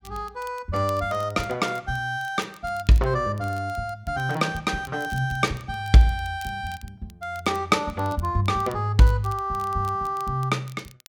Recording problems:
crackle; vinyl, SNR 25 dB

